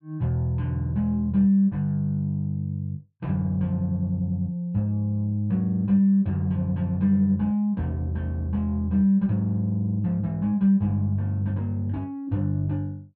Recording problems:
none

